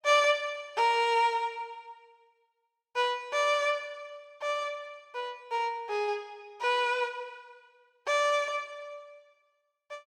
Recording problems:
none

